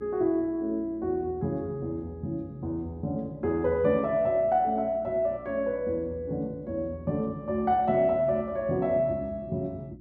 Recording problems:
hum; 60 Hz, harmonics up to 360 Hz, SNR 21 dB

